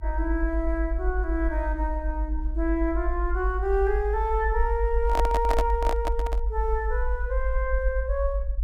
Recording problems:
rumble; below 54 Hz, SNR 1 dB
handling noise; from 5 to 6.5 s; peak +4 dB vs average level

